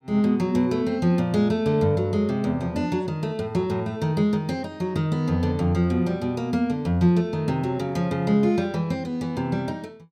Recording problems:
none

